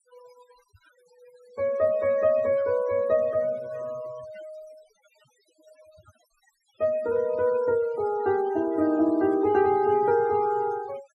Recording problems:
noise reduction artefacts; signal-to-artefact ratio 23 dB

